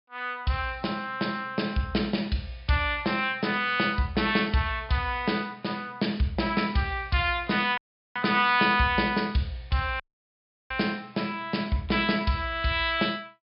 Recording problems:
treble missing; nothing above 5.5 kHz
audio cutting out; at 8 s and at 10 s for 0.5 s

